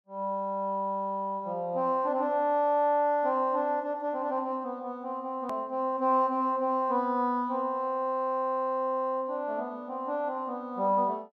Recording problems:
hard cut with a click; at 5.5 s

